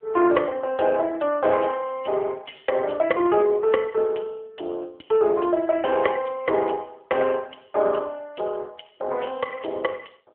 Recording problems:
telephone audio; 300 Hz to 3.5 kHz, AMR-NB

